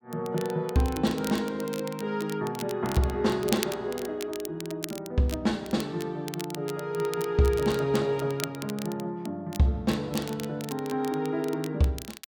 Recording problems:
crackling; vinyl, SNR 13 dB

